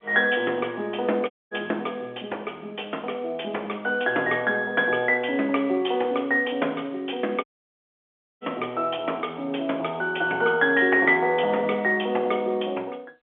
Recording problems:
telephone audio; 300 Hz to 3.4 kHz, G.711
audio cutting out; at 1.5 s and at 7.5 s for 1 s

